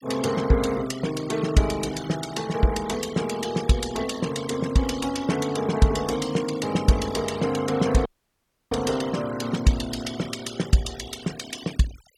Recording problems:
noise reduction artefacts; signal-to-artefact ratio 14 dB
audio cutting out; at 8 s for 0.5 s

